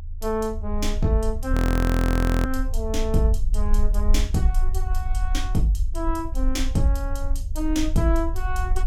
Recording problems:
low-frequency rumble; below 54 Hz, strongest tone 26 Hz, SNR 0 dB
frozen audio; at 1.5 s for 1 s

